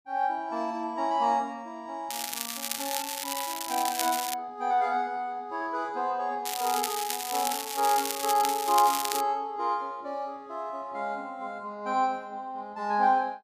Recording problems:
crackle; from 2 to 4.5 s and from 6.5 to 9 s; loose cable, SNR 3 dB

